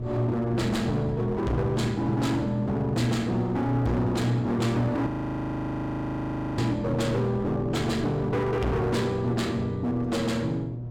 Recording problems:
distorted audio; hard clipping, uneven, signal-to-distortion ratio 7 dB
hum; 60 Hz, harmonics up to 720 Hz, SNR 6 dB
wind on the microphone; below 320 Hz, SNR 14 dB
audio freezing; at 5 s for 1.5 s

